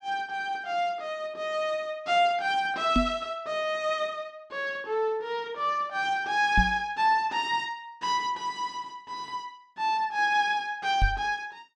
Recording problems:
knock on the microphone; at 3 s, at 6.5 s and at 11 s; peak +6 dB vs average level

